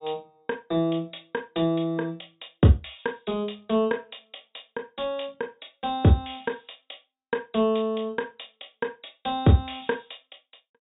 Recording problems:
treble cut off; nothing above 4 kHz

